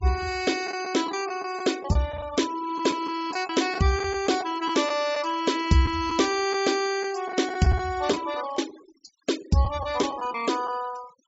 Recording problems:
treble cut off; nothing above 8 kHz
noise reduction artefacts; signal-to-artefact ratio 16 dB
packet loss; 5% of the sound replaced, filled with the last packet

